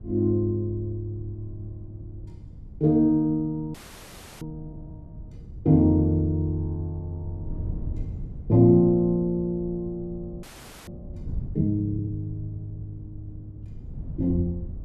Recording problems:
wind noise; below 130 Hz, SNR 16 dB
audio freezing; at 3.5 s for 0.5 s and at 10 s

